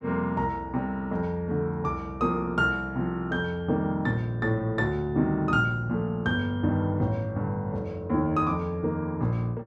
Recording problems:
none

